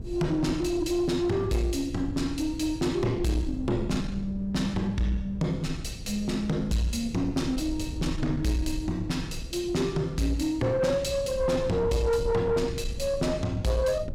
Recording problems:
distorted audio; soft clipping, signal-to-distortion ratio 11 dB
electrical hum; 60 Hz, harmonics up to 480 Hz, SNR 19 dB
wind on the microphone; below 120 Hz, SNR 11 dB

